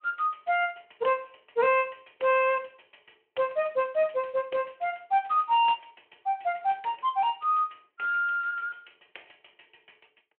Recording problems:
phone line; 300 Hz to 3.2 kHz, Speex

